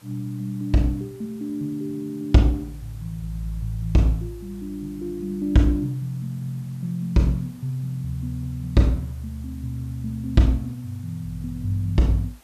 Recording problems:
background hiss; slope -2 dB per octave, SNR 28 dB

